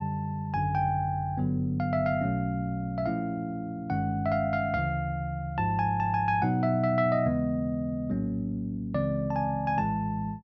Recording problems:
none

